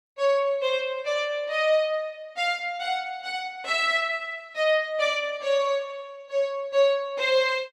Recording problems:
none

